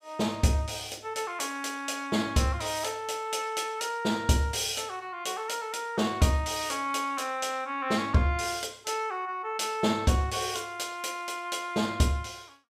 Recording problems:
none

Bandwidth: 15.5 kHz